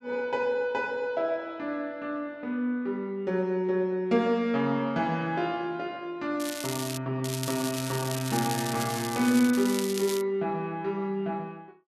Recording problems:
crackling; at 6.5 s, from 7 to 9.5 s and at 9.5 s; loose cable, SNR 7 dB

